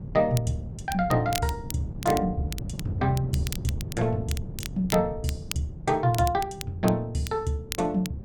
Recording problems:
wind noise; below 180 Hz, SNR 10 dB
crackle; vinyl, SNR 12 dB

